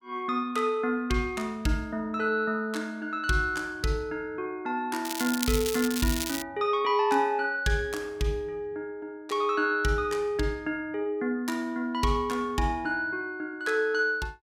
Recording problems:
crackle; from 5 to 6.5 s; loose cable, SNR 5 dB

